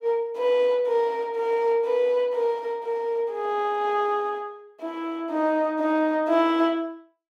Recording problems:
none

